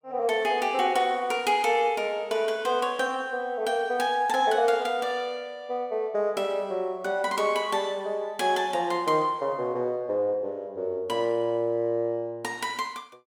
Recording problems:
none

